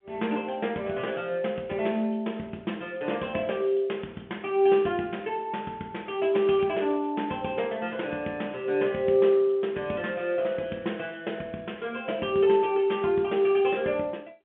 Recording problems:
phone line; 190 Hz to 3.7 kHz, G.711

